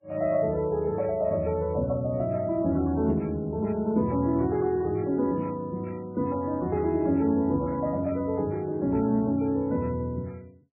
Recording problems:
codec artefacts; MP3, log-spectral distance 2 dB, nothing above 2.4 kHz

